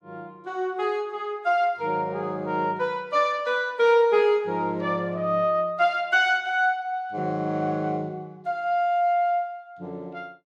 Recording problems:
none

